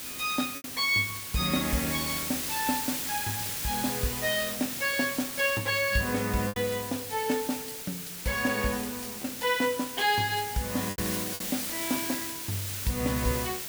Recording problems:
hiss; slope 0 dB per octave, SNR 4 dB
packet loss; 2% of the sound replaced, filled with repeated pitch periods

